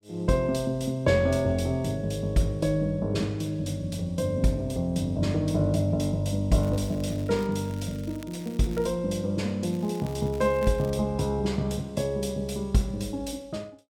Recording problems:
crackling; from 6.5 to 9 s and from 9.5 to 11 s; loose cable, SNR 23 dB

